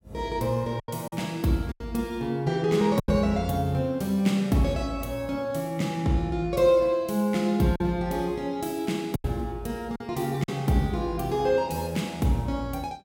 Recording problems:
lost packets; 4% of the sound replaced, filled with silence

